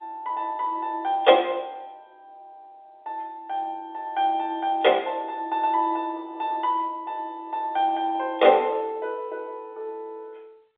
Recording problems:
telephone audio; 280 Hz to 3.6 kHz, G.711

